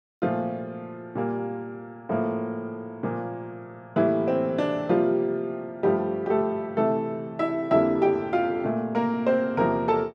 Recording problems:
none

